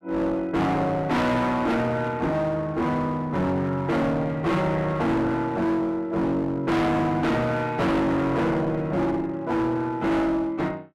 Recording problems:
distorted audio; hard clipping, uneven, signal-to-distortion ratio 5 dB

